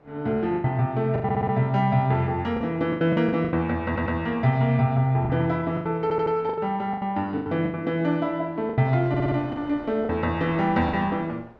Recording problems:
wind on the microphone; below 930 Hz, SNR 24 dB
packet loss; 10% of the sound replaced, filled with the last packet
audio stuttering; 4 times, first at 1 s

